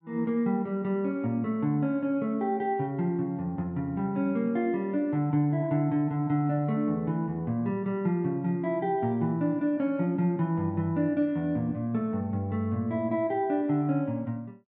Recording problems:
none

